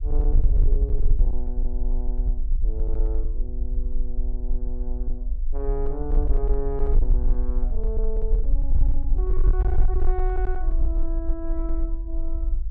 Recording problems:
distortion; hard clipping, uneven, signal-to-distortion ratio 11 dB
low-frequency rumble; below 44 Hz, strongest tone 20 Hz, SNR -9 dB

